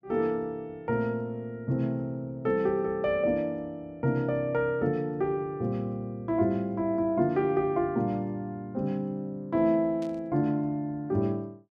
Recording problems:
static burst; at 10 s; peak -16 dB vs average level

